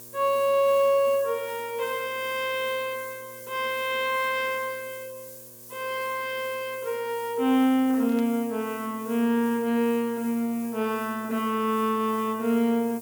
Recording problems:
hum; 60 Hz, harmonics up to 2.2 kHz, SNR 27 dB
hiss; SNR 17 dB
static burst; at 8 s; peak -14 dB vs average level

